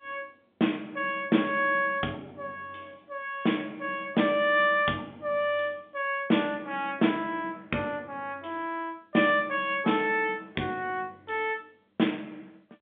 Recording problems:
phone line; 170 Hz to 3.6 kHz, G.711

